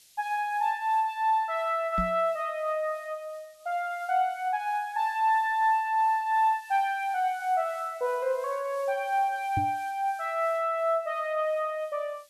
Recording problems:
hiss; SNR 27 dB
microphone bump; at 2 s and at 9.5 s; peak -1 dB vs average level

